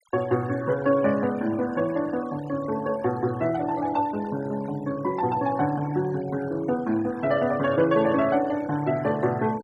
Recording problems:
noise reduction artefacts; signal-to-artefact ratio 19 dB

